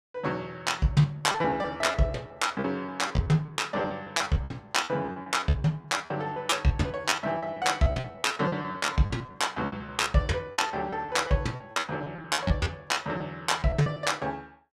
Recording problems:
packet loss; 15% of the sound replaced, filled with repeated pitch periods

